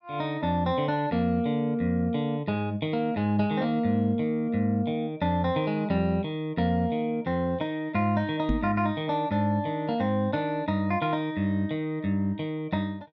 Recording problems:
treble cut off; nothing above 6.8 kHz
knock on the microphone; at 8.5 s; peak +3 dB vs average level

